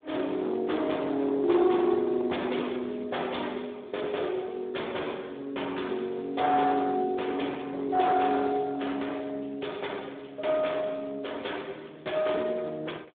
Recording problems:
phone line; 300 Hz to 3.5 kHz, Speex
distorted audio; hard clipping, signal-to-distortion ratio 14 dB

